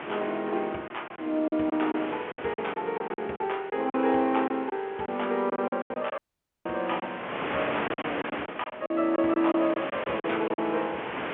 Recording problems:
telephone audio; 220 Hz to 3.3 kHz, G.711
wind on the microphone; below 2.1 kHz, SNR 8 dB
lost packets; 11% of the sound replaced, filled with silence
audio cutting out; at 6 s

